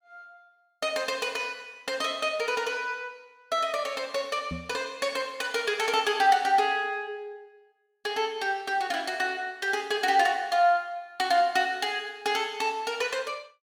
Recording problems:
microphone thump; at 4.5 s; peak -4 dB vs average level

